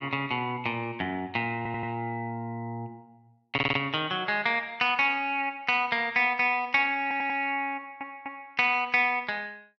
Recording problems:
stutter; 4 times, first at 1.5 s

